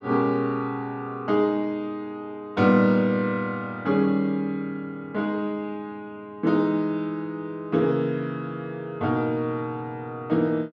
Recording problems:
none

